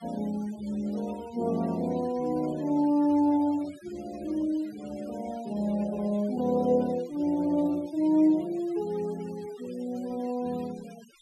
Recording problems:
denoising artefacts; signal-to-artefact ratio 22 dB

